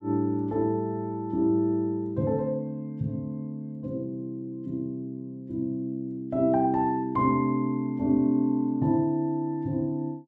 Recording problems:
none

